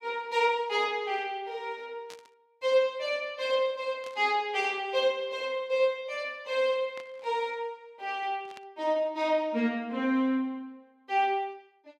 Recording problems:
burst of static; 4 times, first at 2 s; peak -13 dB vs average level

